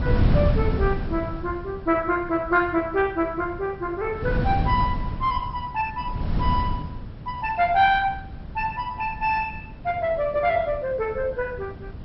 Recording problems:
lossy compression; MP2, log-spectral distance 2 dB, nothing above 5.3 kHz
wind on the microphone; below 170 Hz, SNR 6 dB

